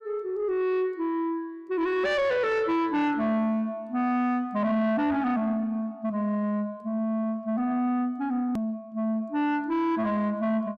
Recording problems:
distortion; soft clipping, signal-to-distortion ratio 10 dB
hard cut with a click; at 8.5 s

